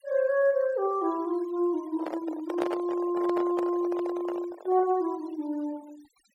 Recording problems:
noise reduction artefacts; signal-to-artefact ratio 22 dB
handling noise; from 2 to 5 s; peak 0 dB vs average level

